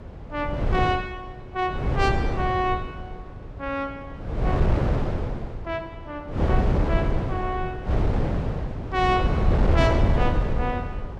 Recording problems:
wind noise; below 260 Hz, SNR -3 dB

